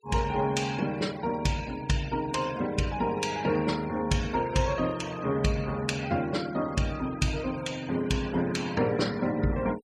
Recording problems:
denoising artefacts; signal-to-artefact ratio 17 dB

